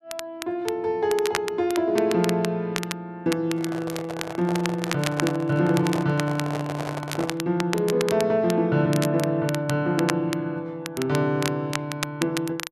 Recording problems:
crackle; vinyl, SNR 9 dB
microphone handling noise; from 3.5 to 7.5 s; peak -2 dB vs average level

